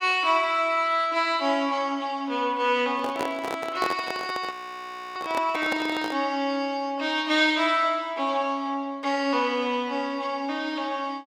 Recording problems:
microphone handling noise; from 3 to 6 s; peak +1 dB vs average level
audio freezing; at 4.5 s for 0.5 s

